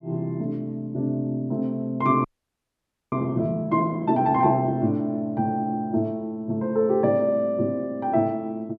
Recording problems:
audio freezing; at 2 s for 1 s

